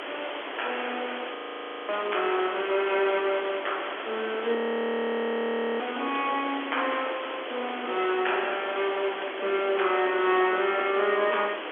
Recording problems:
phone line; 280 Hz to 3.4 kHz, G.711
hiss; SNR 8 dB
frozen audio; at 1.5 s for 0.5 s and at 4.5 s for 1.5 s

